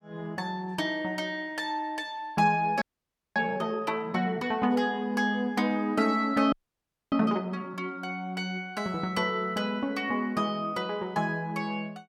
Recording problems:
audio freezing; at 3 s for 0.5 s and at 6.5 s for 0.5 s

